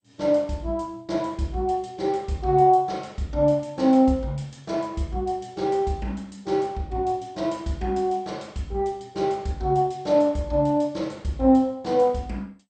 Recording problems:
codec artefacts; MP2, log-spectral distance 2 dB, nothing above 8.2 kHz

